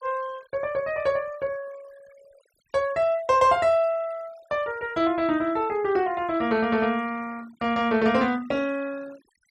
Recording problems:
denoising artefacts; signal-to-artefact ratio 23 dB

